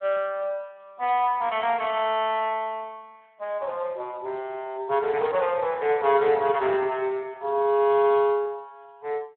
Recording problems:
telephone audio; 260 Hz to 3.5 kHz, Speex

